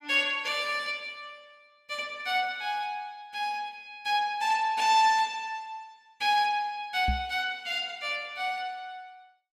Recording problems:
microphone bump; at 7 s; peak +2 dB vs average level

